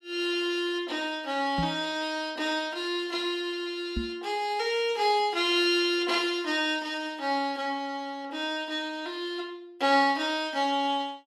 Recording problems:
microphone bump; at 1.5 s and at 4 s; peak 0 dB vs average level

